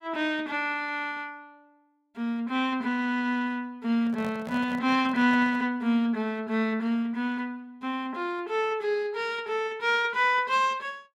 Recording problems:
microphone handling noise; from 4 to 5.5 s; peak -8 dB vs average level

